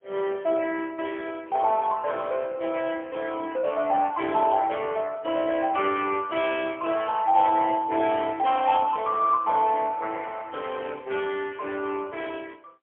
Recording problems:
phone line; 260 Hz to 3.5 kHz, AMR-NB, then MP3

